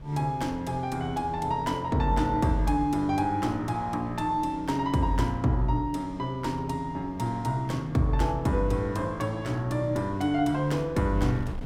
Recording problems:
wind noise; below 220 Hz, SNR 18 dB

